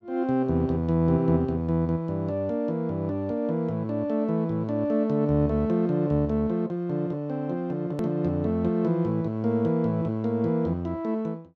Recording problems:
edit click; at 8 s

